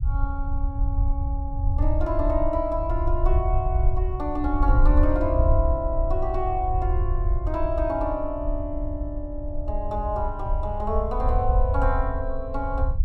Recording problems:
low-frequency rumble; below 70 Hz, SNR -1 dB

